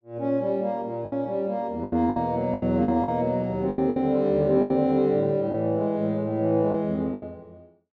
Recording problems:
packet loss; 9% of the sound replaced, filled with the last packet

